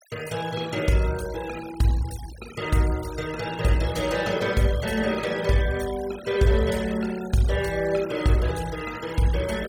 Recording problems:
noise reduction artefacts; signal-to-artefact ratio 16 dB

